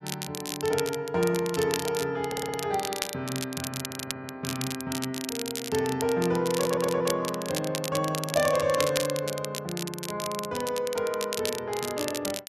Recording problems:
crackling; vinyl, SNR 6 dB
stutter; at 2.5 s, at 4 s and at 6.5 s

